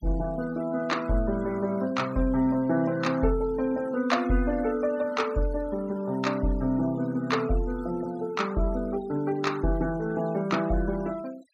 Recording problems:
denoising artefacts; signal-to-artefact ratio 22 dB

